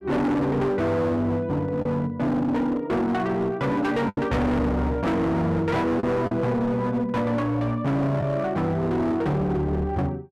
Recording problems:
distortion; hard clipping, signal-to-distortion ratio 7 dB
lost packets; 1.9% of the sound replaced, filled with the last packet

